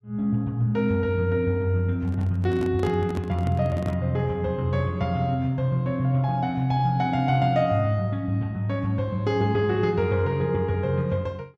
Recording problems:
handling noise; from 2 to 4 s; peak -5 dB vs average level

